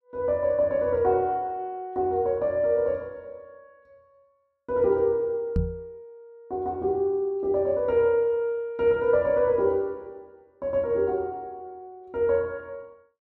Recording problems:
microphone bump; at 5.5 s; peak +2 dB vs average level

